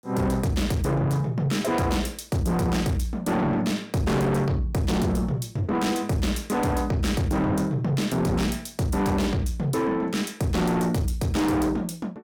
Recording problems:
distortion; soft clipping, signal-to-distortion ratio 7 dB

